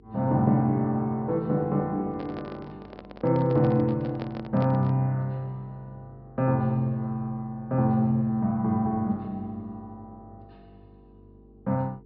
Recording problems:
treble missing; nothing above 5.5 kHz
hum; 50 Hz, harmonics up to 450 Hz, SNR 27 dB
handling noise; from 2 to 5 s; peak -6 dB vs average level

